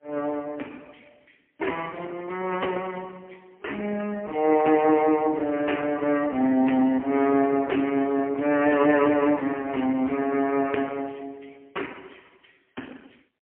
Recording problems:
phone line; 220 Hz to 3.2 kHz, AMR-NB, then MP3

